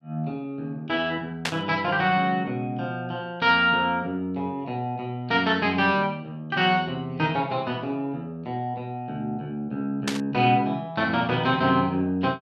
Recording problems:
static burst; at 1.5 s and at 10 s; peak +3 dB vs average level

